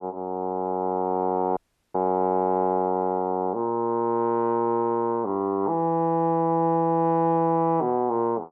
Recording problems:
dropout; at 1.5 s

